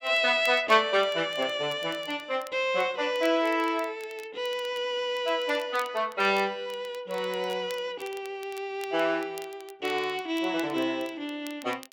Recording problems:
crackle; vinyl, SNR 22 dB

